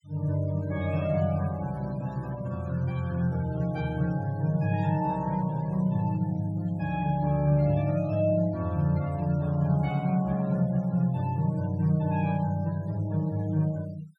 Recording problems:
noise reduction artefacts; signal-to-artefact ratio 23 dB

